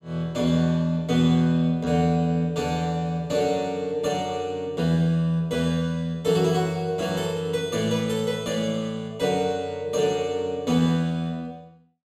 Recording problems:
none

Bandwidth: 14.5 kHz